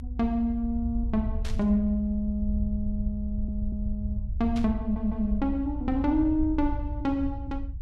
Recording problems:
low-frequency rumble; below 68 Hz, SNR 5 dB
burst of static; at 1.5 s and at 4.5 s; peak -8 dB vs average level
stutter; at 3.5 s and at 5 s

